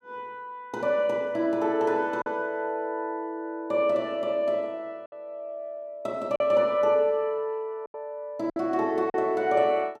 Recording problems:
packet loss; 3% of the sound replaced, filled with silence

